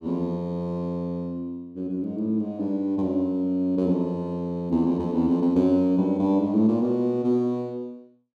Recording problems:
none

